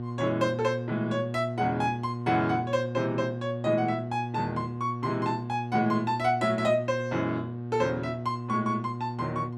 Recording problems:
hum; 60 Hz, harmonics up to 1.1 kHz, SNR 7 dB

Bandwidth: 14.5 kHz